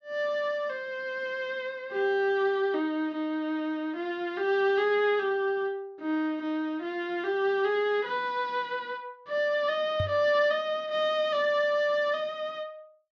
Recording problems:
microphone thump; at 10 s; peak 0 dB vs average level

